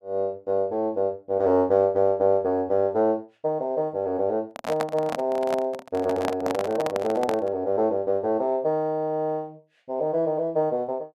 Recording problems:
microphone handling noise; from 4.5 to 7.5 s; peak 0 dB vs average level

